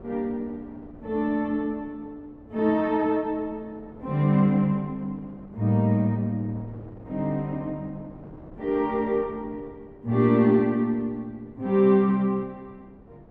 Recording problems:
wind on the microphone; below 490 Hz, SNR 23 dB

